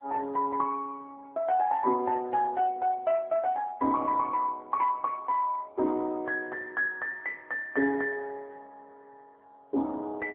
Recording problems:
telephone audio; 240 Hz to 2.2 kHz, AMR-NB

